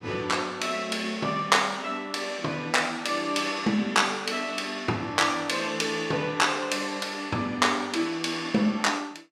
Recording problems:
none

